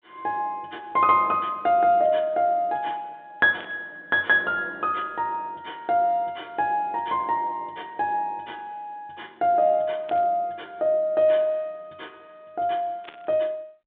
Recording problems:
telephone audio; 170 Hz to 3.6 kHz, G.726
burst of static; at 3.5 s, at 10 s and at 13 s; peak -12 dB vs average level

